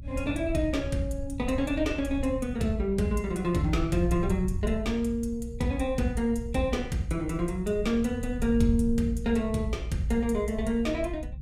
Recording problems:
rumble; below 92 Hz, SNR 8 dB

